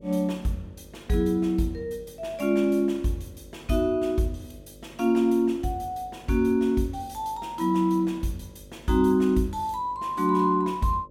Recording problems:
hum; 50 Hz, harmonics up to 600 Hz, SNR 25 dB

